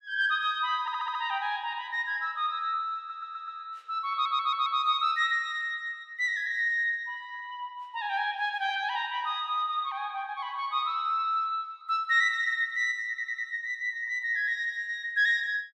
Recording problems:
audio stuttering; 4 times, first at 1 s

